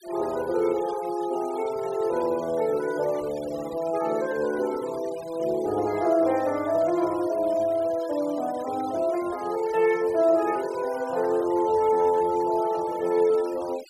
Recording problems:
denoising artefacts; signal-to-artefact ratio 20 dB

